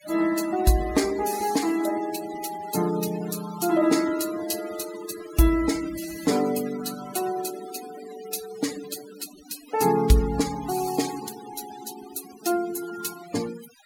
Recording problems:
denoising artefacts; signal-to-artefact ratio 13 dB

